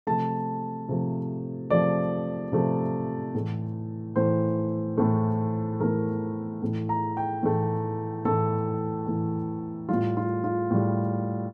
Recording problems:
none

